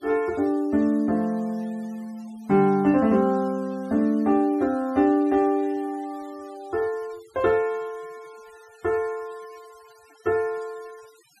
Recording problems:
noise reduction artefacts; signal-to-artefact ratio 28 dB

